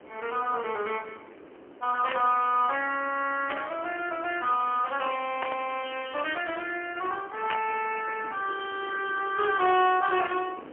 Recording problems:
telephone audio; 260 Hz to 3.1 kHz, AMR-NB, then MP3
background hiss; SNR 18 dB
burst of static; 4 times, first at 2 s; peak -1 dB vs average level

